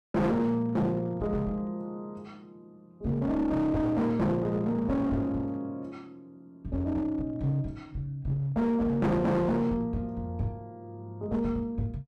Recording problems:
distorted audio; hard clipping, uneven, signal-to-distortion ratio 7 dB

